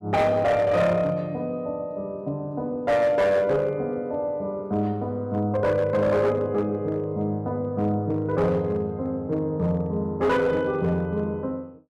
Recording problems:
distorted audio; hard clipping, uneven, signal-to-distortion ratio 12 dB

